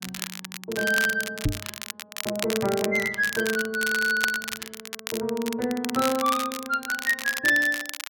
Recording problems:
crackling; vinyl, SNR 8 dB
microphone bump; at 1.5 s; peak +4 dB vs average level

